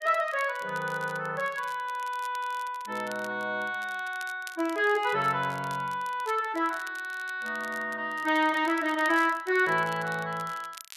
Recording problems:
crackle; vinyl, SNR 20 dB

